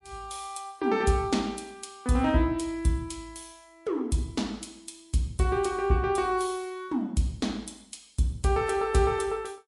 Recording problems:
lossy codec; MP3, log-spectral distance 4 dB, nothing above 11 kHz

